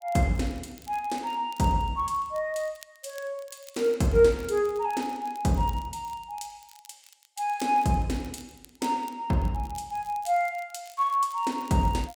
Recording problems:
crackle; vinyl, SNR 25 dB

